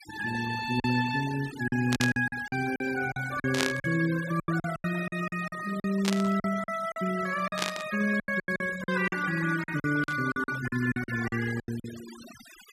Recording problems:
denoising artefacts; signal-to-artefact ratio 14 dB
packet loss; 14% of the sound replaced, filled with silence
burst of static; 5 times, first at 2 s; peak +5 dB vs average level

